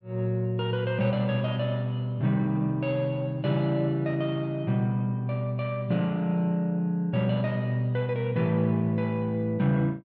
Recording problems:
none

